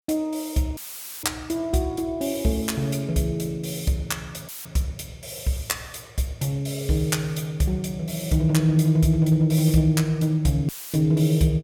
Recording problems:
audio cutting out; at 1 s, at 4.5 s and at 11 s; filled with static

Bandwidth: 17 kHz